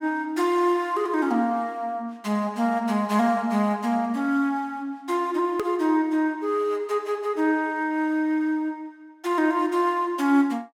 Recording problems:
edit click; at 5.5 s

